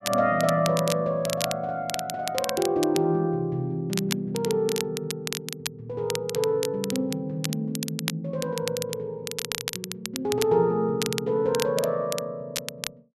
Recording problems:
crackling; vinyl, SNR 7 dB

